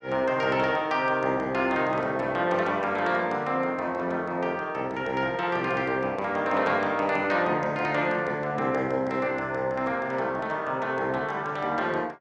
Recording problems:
none

